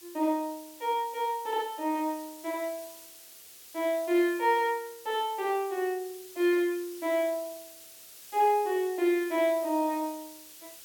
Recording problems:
hiss; SNR 18 dB

